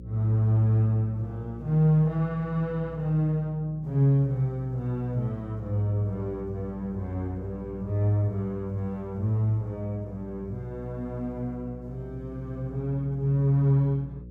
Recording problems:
hum; 60 Hz, harmonics up to 540 Hz, SNR 16 dB

